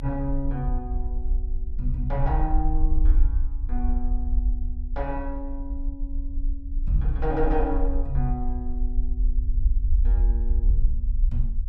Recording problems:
low-frequency rumble; below 48 Hz, strongest tone 26 Hz, SNR -4 dB

